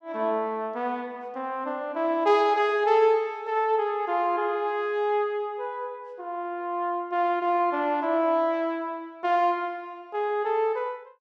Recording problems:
none

